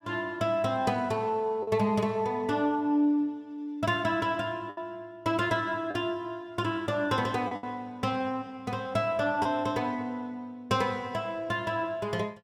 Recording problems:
lost packets; 2% of the sound replaced, filled with the last packet

